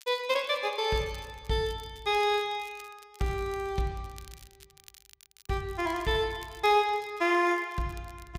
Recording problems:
crackle; vinyl, SNR 24 dB

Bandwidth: 15.5 kHz